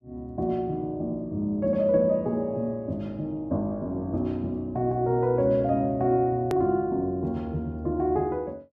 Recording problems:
hard cut with a click; at 6.5 s

